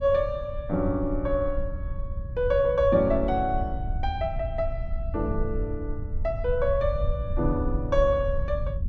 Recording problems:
low-frequency rumble; below 78 Hz, SNR 6 dB

